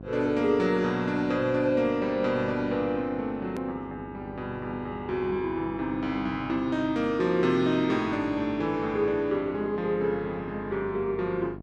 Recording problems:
electrical hum; 50 Hz, harmonics up to 1.1 kHz, SNR 16 dB
click at an edit; at 3.5 s

